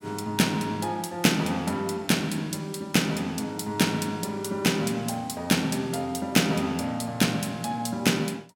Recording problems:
none

